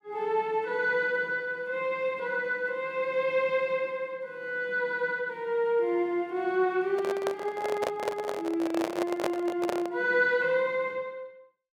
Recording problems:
handling noise; from 7 to 10 s; peak +2 dB vs average level

